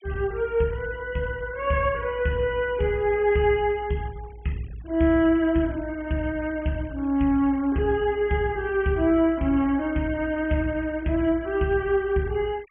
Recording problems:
treble missing; nothing above 3.2 kHz
denoising artefacts; signal-to-artefact ratio 26 dB

